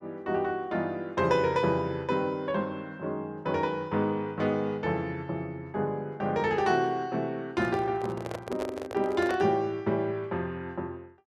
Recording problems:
microphone handling noise; from 7.5 to 9.5 s; peak -2 dB vs average level

